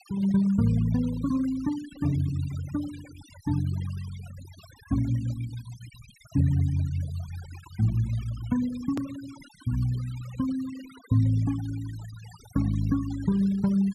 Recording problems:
noise reduction artefacts; signal-to-artefact ratio 20 dB
click at an edit; at 9 s

